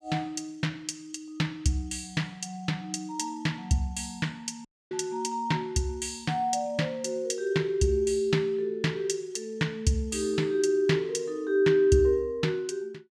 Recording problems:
audio cutting out; at 4.5 s

